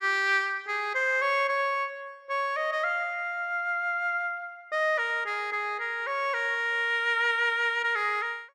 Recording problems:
none

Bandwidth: 14 kHz